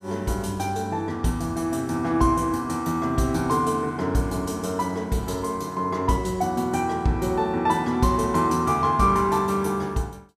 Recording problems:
none

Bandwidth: 15 kHz